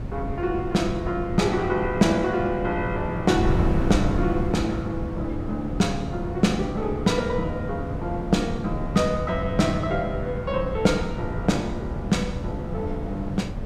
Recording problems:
wind noise; below 190 Hz, SNR 6 dB

